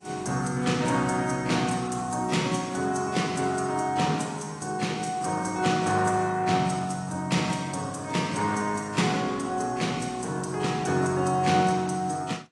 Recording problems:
lossy compression; AAC, log-spectral distance 4 dB

